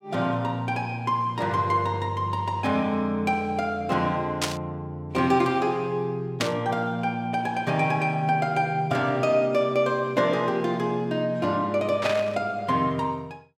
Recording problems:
static burst; at 4.5 s, at 6.5 s and at 12 s; peak +3 dB vs average level

